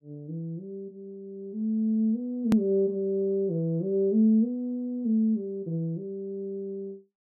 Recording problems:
click at an edit; at 2.5 s

